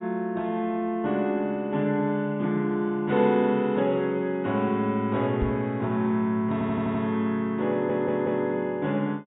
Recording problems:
treble cut off; nothing above 4 kHz
microphone thump; at 5.5 s; peak 0 dB vs average level
audio stuttering; at 6.5 s and at 7.5 s

